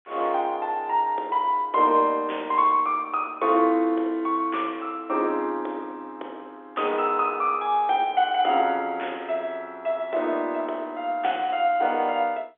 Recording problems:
phone line; 300 Hz to 3.6 kHz, G.711

